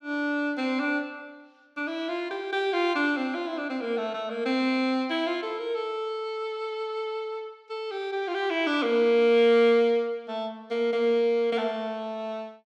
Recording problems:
none

